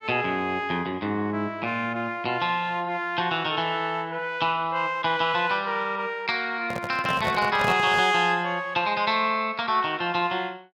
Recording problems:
microphone handling noise; from 6.5 to 8 s; peak -1 dB vs average level

